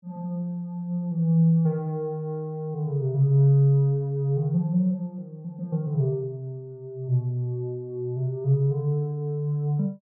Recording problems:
none

